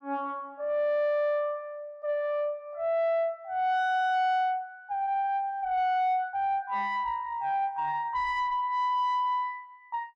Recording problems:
distorted audio; soft clipping, signal-to-distortion ratio 11 dB

